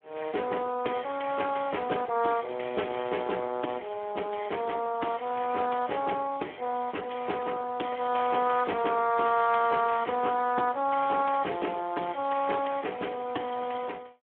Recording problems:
phone line; 220 Hz to 3.3 kHz, Speex

